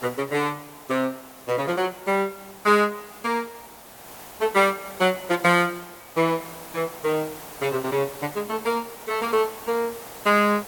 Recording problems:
hiss; SNR 16 dB

